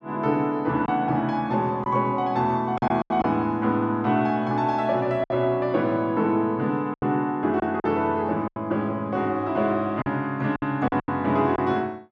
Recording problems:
packet loss; 6% of the sound replaced, filled with silence

